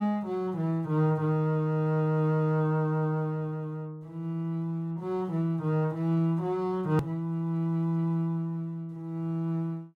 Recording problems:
edit click; at 7 s

